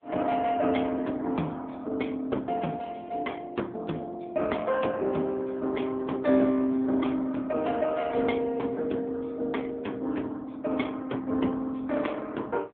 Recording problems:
phone line; 190 Hz to 3.3 kHz, AMR-NB

